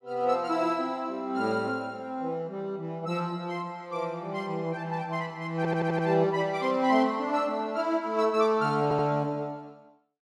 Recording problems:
audio stuttering; at 5.5 s and at 9 s

